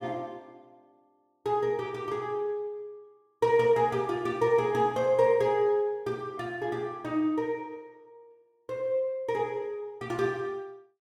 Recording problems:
none

